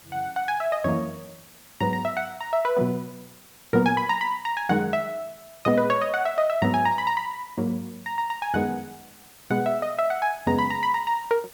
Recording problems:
hiss; slope -1 dB per octave, SNR 23 dB

